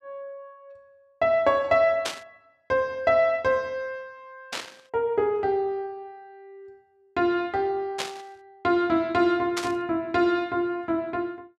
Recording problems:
static burst; 4 times, first at 2 s; peak 0 dB vs average level

